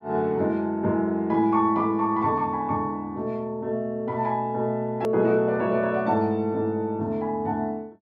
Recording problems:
hard cut with a click; at 5 s

